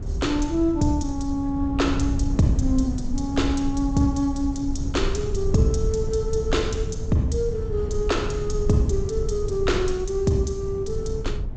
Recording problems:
lossy codec; G.722, log-spectral distance 2 dB, nothing above 7.8 kHz
wind on the microphone; below 100 Hz, SNR 5 dB

